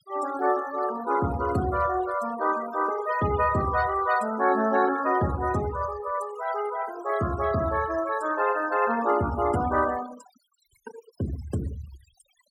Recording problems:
denoising artefacts; signal-to-artefact ratio 16 dB

